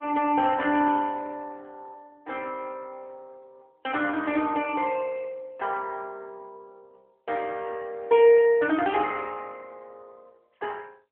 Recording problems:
phone line; 220 Hz to 3.3 kHz, AMR-NB

